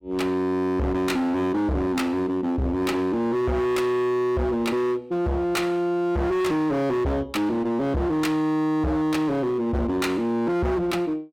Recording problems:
distortion; hard clipping, signal-to-distortion ratio 6 dB

